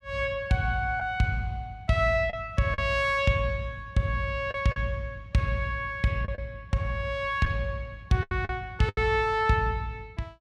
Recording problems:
packet loss; 4% of the sound replaced, filled with the last packet

